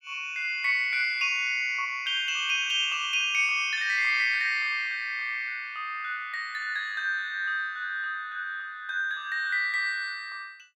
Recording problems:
none

